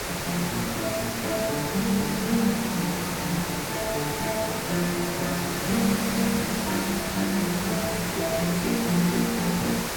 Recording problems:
hiss; slope -3 dB per octave, SNR 2 dB

